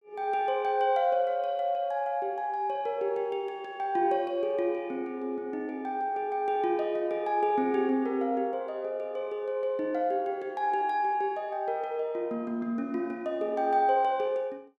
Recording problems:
none

